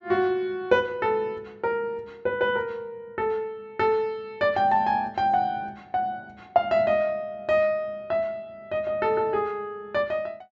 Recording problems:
treble missing; nothing above 8 kHz

